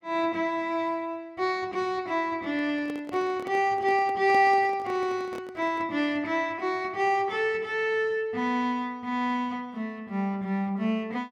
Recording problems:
microphone handling noise; from 2.5 to 6 s; peak -5 dB vs average level

